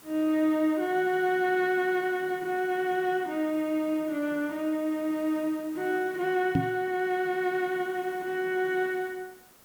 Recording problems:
hiss; slope -3 dB per octave, SNR 24 dB
microphone bump; at 6.5 s; peak +6 dB vs average level

